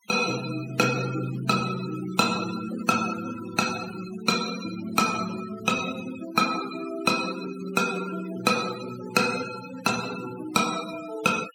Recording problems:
noise reduction artefacts; signal-to-artefact ratio 11 dB

